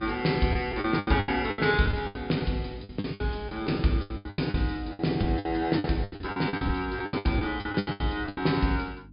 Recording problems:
treble cut off; nothing above 5.1 kHz
hum; 50 Hz, harmonics up to 300 Hz, SNR 20 dB
packet loss; 20% of the sound replaced, filled with the last packet

